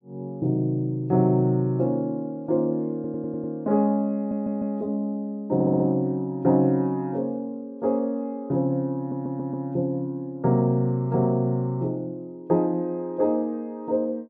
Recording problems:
audio stuttering; 4 times, first at 3 s

